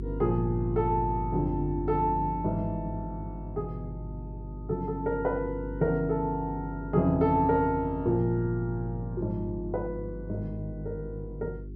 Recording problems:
hum; 50 Hz, harmonics up to 400 Hz, SNR 9 dB

